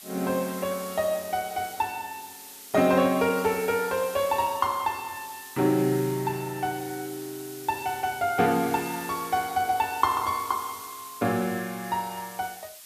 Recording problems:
hiss; slope +3 dB per octave, SNR 14 dB

